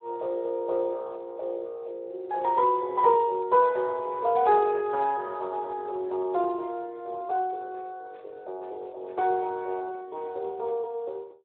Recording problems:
phone line; 340 Hz to 2.5 kHz, Speex

